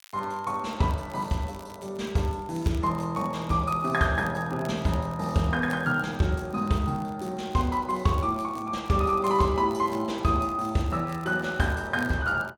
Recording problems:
crackle; vinyl, SNR 26 dB

